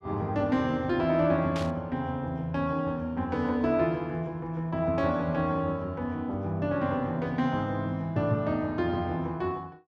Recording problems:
static burst; at 1.5 s; peak -6 dB vs average level

